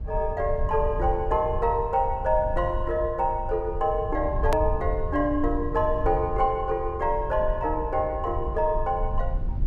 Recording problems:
rumble; below 70 Hz, SNR 7 dB
edit click; at 4.5 s

